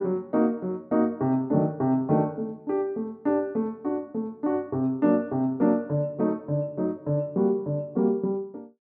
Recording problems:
none

